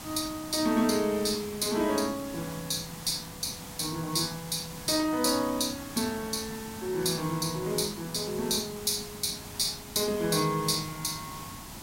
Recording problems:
background hiss; SNR 12 dB

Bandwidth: 16 kHz